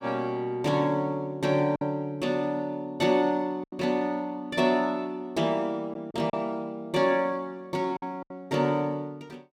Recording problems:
lost packets; 3% of the sound replaced, filled with silence

